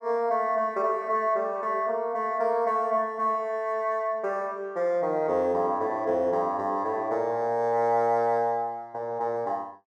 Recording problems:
none

